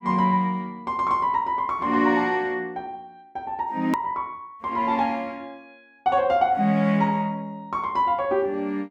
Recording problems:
click at an edit; at 4 s

